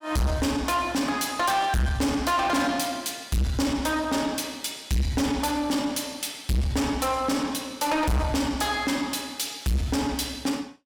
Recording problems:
distortion; soft clipping, signal-to-distortion ratio 7 dB

